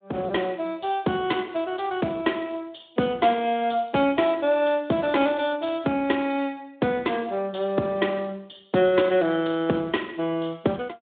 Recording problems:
telephone audio; 130 Hz to 3.6 kHz, Speex

